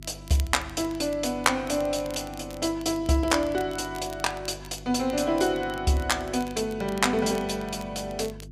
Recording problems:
electrical hum; 50 Hz, harmonics up to 400 Hz, SNR 18 dB
crackle; vinyl, SNR 21 dB

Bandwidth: 14.5 kHz